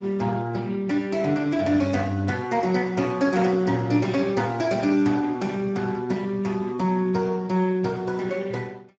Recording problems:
lossy compression; Speex, log-spectral distance 3 dB, nothing above 7.3 kHz

